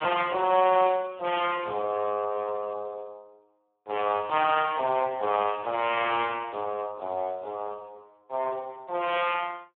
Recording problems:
telephone audio; 260 Hz to 3.3 kHz, Speex

